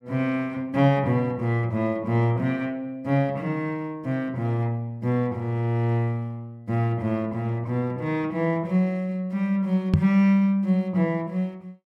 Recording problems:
microphone bump; at 10 s; peak +8 dB vs average level

